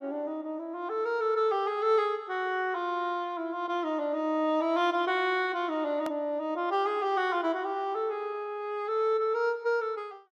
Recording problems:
edit click; at 6 s

